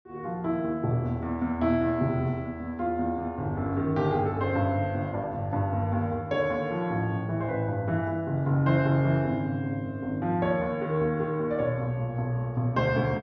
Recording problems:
low-pass filter; nothing above 6.5 kHz

